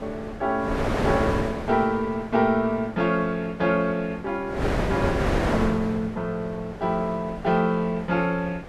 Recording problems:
wind noise; below 840 Hz, SNR 4 dB

